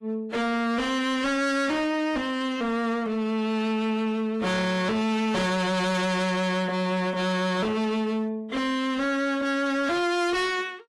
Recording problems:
lossy codec; AAC, log-spectral distance 2 dB, nothing above 11 kHz
distorted audio; hard clipping, signal-to-distortion ratio 6 dB

